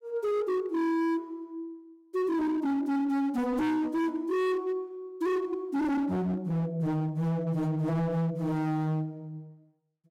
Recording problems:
distortion; hard clipping, signal-to-distortion ratio 7 dB

